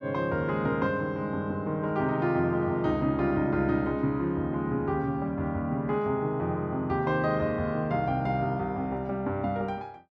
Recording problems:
none

